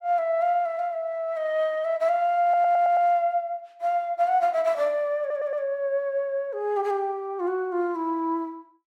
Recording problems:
stutter; at 2.5 s and at 5 s

